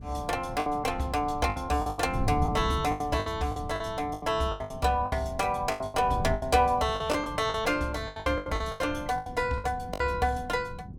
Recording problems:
wind noise; below 170 Hz, SNR 11 dB
packet loss; 15% of the sound replaced, filled with the last packet

